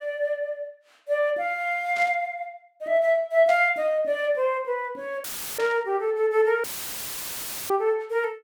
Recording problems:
static burst; at 2 s, at 3.5 s and at 5.5 s; peak -9 dB vs average level
dropout; at 5 s and at 6.5 s for 1 s; filled with static

